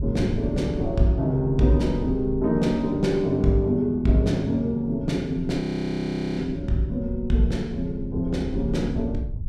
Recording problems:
wind noise; below 92 Hz, SNR 12 dB
audio freezing; at 5.5 s for 1 s

